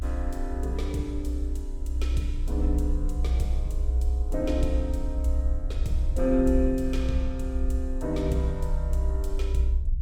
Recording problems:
low-frequency rumble; below 64 Hz, SNR -2 dB

